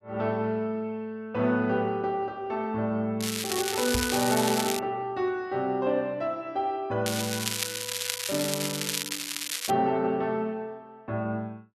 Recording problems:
crackle; from 3 to 5 s and from 7 to 9.5 s; loose cable, SNR 2 dB
microphone thump; at 4 s; peak +1 dB vs average level

